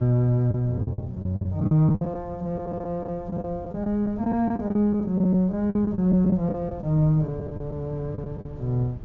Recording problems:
treble cut off; nothing above 7.2 kHz
wind on the microphone; below 160 Hz, SNR 17 dB
packet loss; 14% of the sound replaced, filled with the last packet

